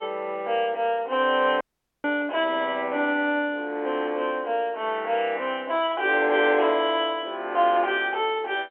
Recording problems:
telephone audio; 300 Hz to 3.5 kHz, G.711
audio cutting out; at 1.5 s

